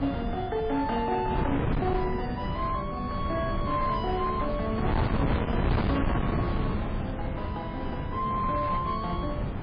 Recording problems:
lossy codec; MP3, log-spectral distance 2 dB
distorted audio; hard clipping, signal-to-distortion ratio 11 dB
wind noise; below 330 Hz, SNR 0 dB
crackle; from 4.5 to 7 s; loose cable, SNR 27 dB

